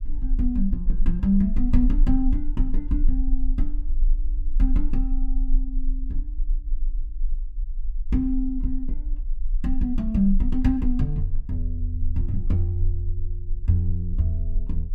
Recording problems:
rumble; below 34 Hz, strongest tone 22 Hz, SNR 3 dB

